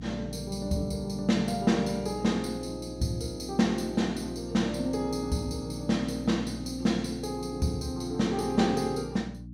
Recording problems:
hum; 60 Hz, harmonics up to 300 Hz, SNR 12 dB

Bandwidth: 16.5 kHz